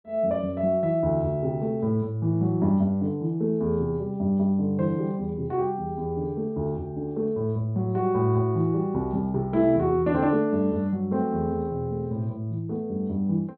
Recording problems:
treble cut off; nothing above 4.3 kHz

